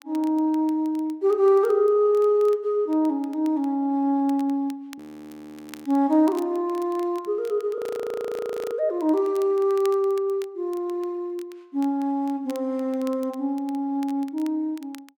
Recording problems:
crackling; vinyl, SNR 27 dB
audio freezing; at 5 s for 1 s and at 8 s for 1 s

